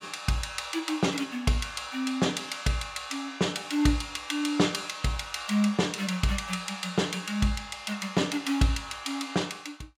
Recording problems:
none

